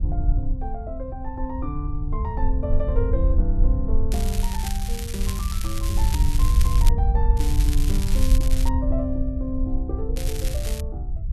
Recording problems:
low-frequency rumble; below 64 Hz, SNR -7 dB
crackle; from 4 to 7 s, from 7.5 to 8.5 s and at 10 s; loose cable, SNR 4 dB

